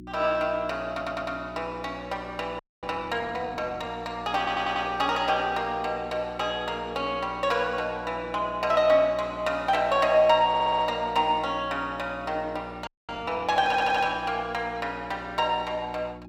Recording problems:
hum; 60 Hz, harmonics up to 360 Hz, SNR 17 dB
audio stuttering; 4 times, first at 1 s
audio freezing; at 2.5 s and at 13 s

